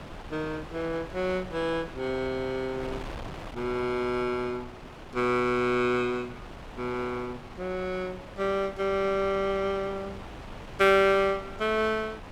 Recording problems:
wind noise; below 1.1 kHz, SNR 14 dB

